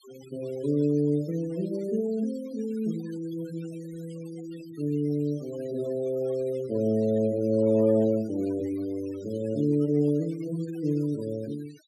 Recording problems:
denoising artefacts; signal-to-artefact ratio 24 dB

